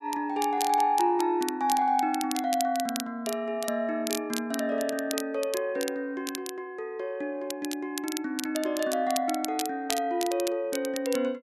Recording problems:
crackle; vinyl, SNR 9 dB

